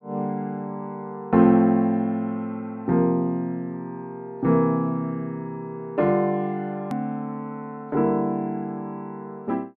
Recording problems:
edit click; at 7 s

